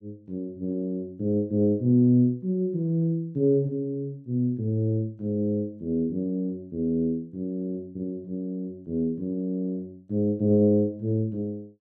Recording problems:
none

